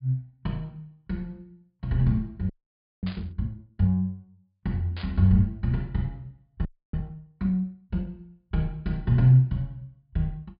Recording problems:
low-pass filter; nothing above 4.9 kHz
audio freezing; at 2.5 s for 0.5 s and at 6.5 s
static burst; at 3 s and at 5 s; peak -10 dB vs average level

